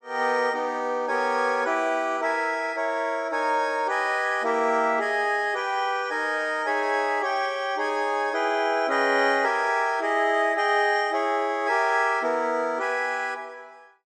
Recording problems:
none

